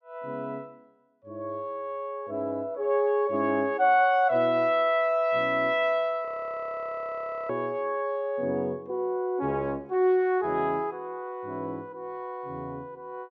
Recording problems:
audio freezing; at 6.5 s for 1 s

